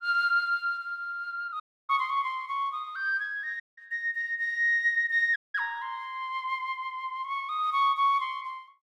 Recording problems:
audio cutting out; at 1.5 s, at 3.5 s and at 5.5 s

